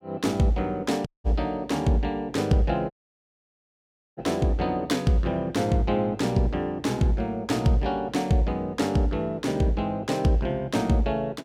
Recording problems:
dropout; at 1 s and at 3 s for 1.5 s

